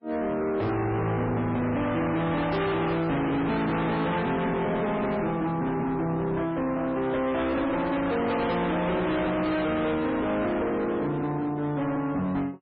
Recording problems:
codec artefacts; MP3, log-spectral distance 3 dB
distortion; hard clipping, uneven, signal-to-distortion ratio 6 dB

